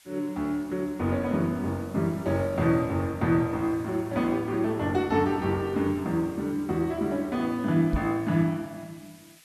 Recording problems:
background hiss; SNR 27 dB
microphone thump; at 8 s; peak +2 dB vs average level

